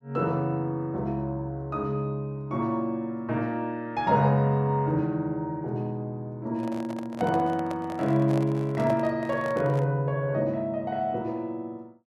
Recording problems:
microphone handling noise; from 6.5 to 10 s; peak -3 dB vs average level

